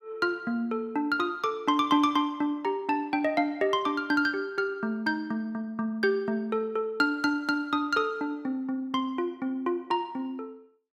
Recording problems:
none

